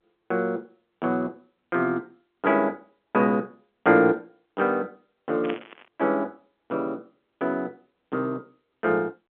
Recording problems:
phone line; 170 Hz to 3.6 kHz, G.711
static burst; at 5.5 s; peak -4 dB vs average level

